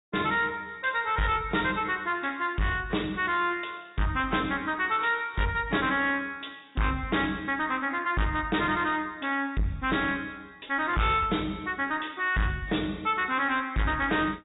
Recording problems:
low-pass filter; nothing above 3.8 kHz
lossy codec; AAC, log-spectral distance 3 dB
distorted audio; soft clipping, signal-to-distortion ratio 7 dB

